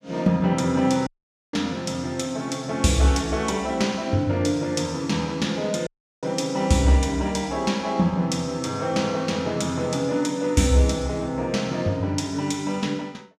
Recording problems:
dropout; at 1 s and at 6 s

